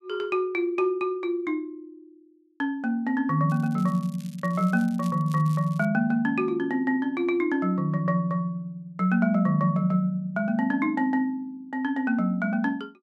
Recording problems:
crackling; from 3.5 to 6 s; loose cable, SNR 25 dB

